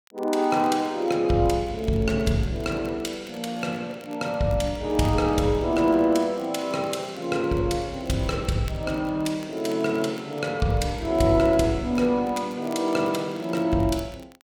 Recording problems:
crackling; vinyl, SNR 27 dB

